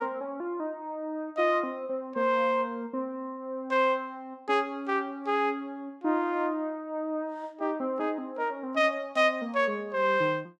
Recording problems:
none

